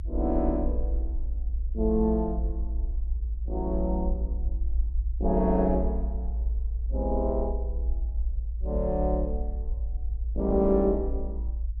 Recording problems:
low-frequency rumble; below 58 Hz, strongest tone 56 Hz, SNR 3 dB

